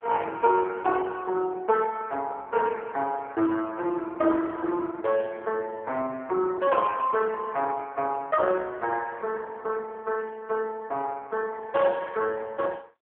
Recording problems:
telephone audio; 280 Hz to 2.8 kHz, AMR-NB

